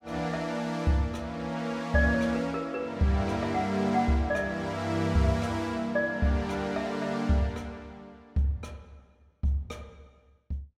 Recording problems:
none

